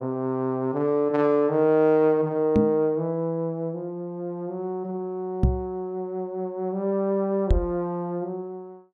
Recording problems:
microphone thump; at 2.5 s, at 5.5 s and at 7.5 s; peak +9 dB vs average level

